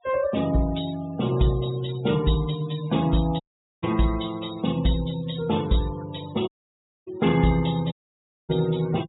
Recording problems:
low-pass filter; nothing above 4 kHz
denoising artefacts; signal-to-artefact ratio 18 dB
dropout; at 3.5 s, at 6.5 s for 0.5 s and at 8 s for 0.5 s

